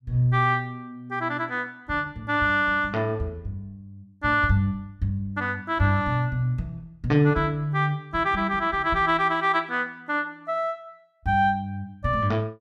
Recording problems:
none

